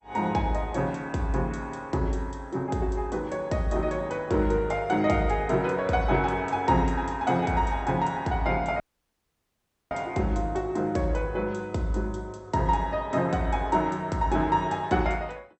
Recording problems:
lossy codec; MP2, log-spectral distance 2 dB, nothing above 8 kHz
dropout; at 9 s for 1 s

